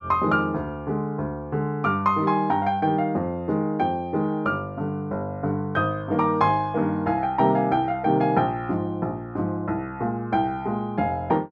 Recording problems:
none

